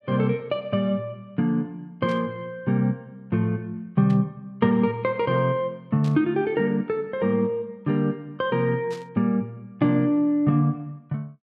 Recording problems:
static burst; 4 times, first at 2 s; peak -14 dB vs average level

